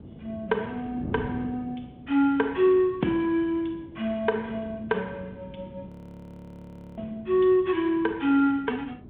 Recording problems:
telephone audio; 150 Hz to 3.5 kHz, G.726
wind on the microphone; below 320 Hz, SNR 17 dB
frozen audio; at 6 s for 1 s

